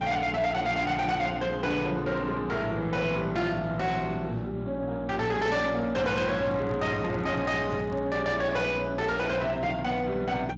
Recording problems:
codec artefacts; MP2, then Speex, log-spectral distance 3 dB, nothing above 7.3 kHz
distortion; soft clipping, signal-to-distortion ratio 12 dB
electrical hum; 60 Hz, harmonics up to 300 Hz, SNR 10 dB
microphone handling noise; from 6 to 8 s; peak -4 dB vs average level

